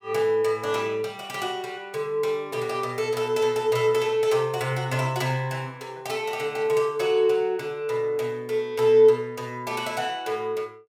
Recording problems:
none

